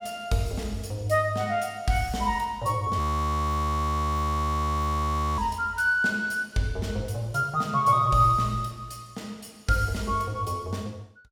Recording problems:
frozen audio; at 3 s for 2.5 s

